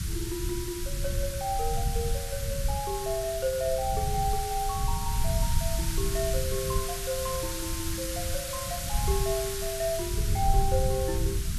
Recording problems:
hiss; SNR 3 dB
low-frequency rumble; below 96 Hz, SNR 1 dB

